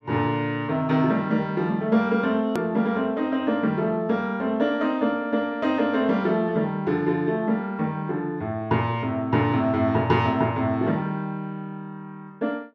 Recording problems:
click at an edit; at 2.5 s

